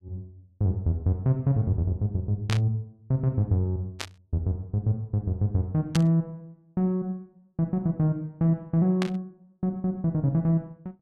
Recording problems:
burst of static; 4 times, first at 2.5 s; peak 0 dB vs average level

